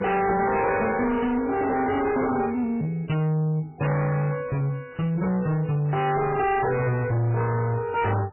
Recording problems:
lossy compression; MP3, log-spectral distance 3 dB, nothing above 2.9 kHz
distortion; soft clipping, signal-to-distortion ratio 6 dB

